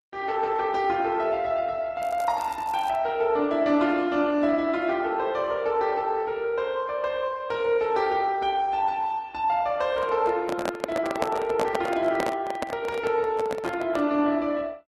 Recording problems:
codec artefacts; Opus, log-spectral distance 2 dB
crackling; at 2 s; loose cable, SNR 25 dB
microphone handling noise; from 10 to 14 s; peak +2 dB vs average level

